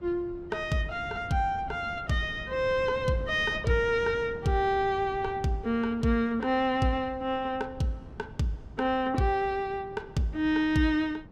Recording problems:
wind noise; below 270 Hz, SNR 17 dB

